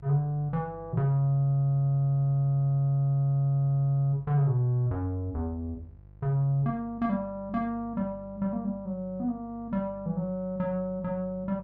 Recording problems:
hum; 50 Hz, harmonics up to 550 Hz, SNR 23 dB

